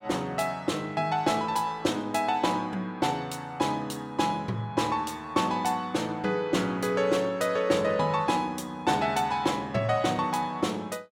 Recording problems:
none

